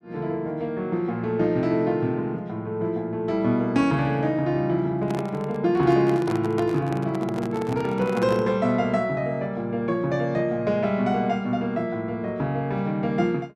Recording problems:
microphone handling noise; from 5 to 8.5 s; peak -3 dB vs average level

